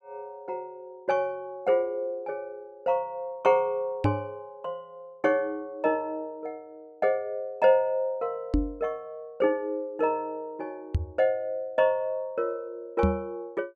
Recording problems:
microphone thump; 4 times, first at 4 s; peak +7 dB vs average level

